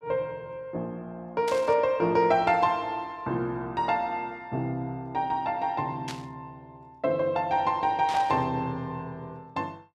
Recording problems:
static burst; at 1.5 s, at 6 s and at 8 s; peak -6 dB vs average level

